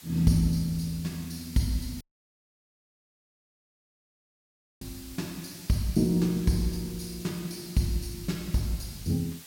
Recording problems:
background hiss; slope +2 dB per octave, SNR 16 dB
audio cutting out; at 2 s for 3 s

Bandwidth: 16.5 kHz